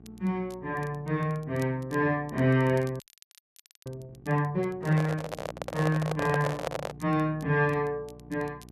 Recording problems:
hum; 60 Hz, harmonics up to 1.1 kHz, SNR 22 dB
crackle; vinyl, SNR 27 dB
audio freezing; at 3 s for 1 s
microphone handling noise; from 5 to 7 s; peak +1 dB vs average level

